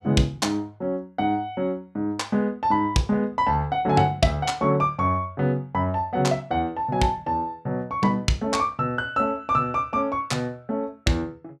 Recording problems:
none

